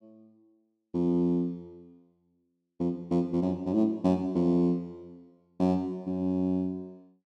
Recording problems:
none

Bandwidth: 12.5 kHz